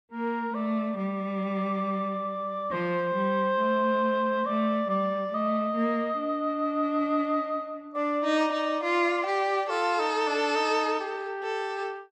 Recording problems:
none

